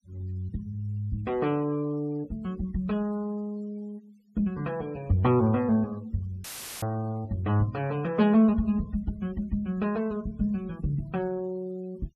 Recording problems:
noise reduction artefacts; signal-to-artefact ratio 27 dB
dropout; at 6.5 s; filled with static

